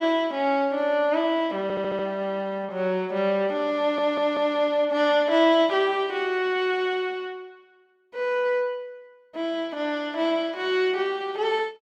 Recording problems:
stutter; at 1.5 s and at 4 s

